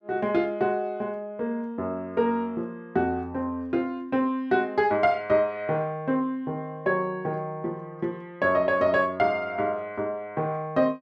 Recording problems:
none

